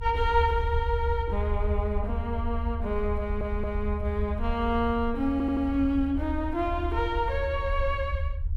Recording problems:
rumble; below 76 Hz, SNR 4 dB
audio stuttering; at 3 s and at 5.5 s

